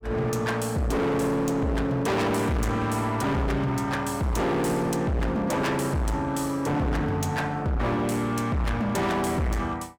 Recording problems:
distortion; hard clipping, signal-to-distortion ratio 6 dB

